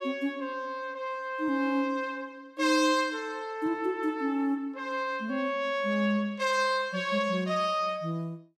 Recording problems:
none

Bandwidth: 15.5 kHz